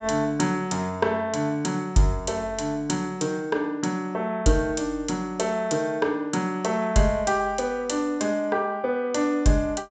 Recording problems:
treble cut off; nothing above 8 kHz

